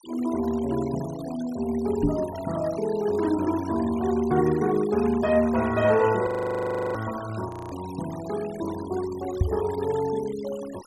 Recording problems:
denoising artefacts; signal-to-artefact ratio 17 dB
microphone bump; at 2 s and at 9.5 s; peak +7 dB vs average level
audio freezing; at 6.5 s for 0.5 s and at 7.5 s

